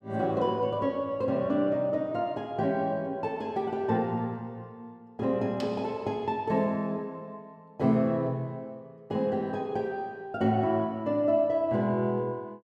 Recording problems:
none

